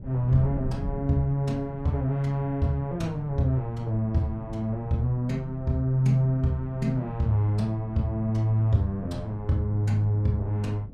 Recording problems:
wind on the microphone; below 160 Hz, SNR 15 dB

